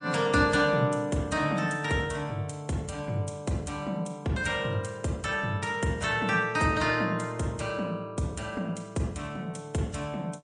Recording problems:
lossy compression; MP3, log-spectral distance 3 dB, nothing above 9.5 kHz

